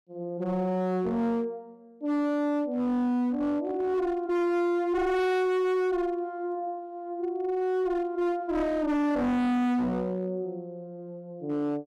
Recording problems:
distorted audio; hard clipping, signal-to-distortion ratio 7 dB

